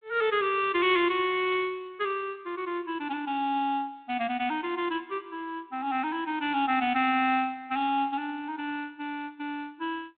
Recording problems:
telephone audio; 280 Hz to 3.7 kHz, G.726

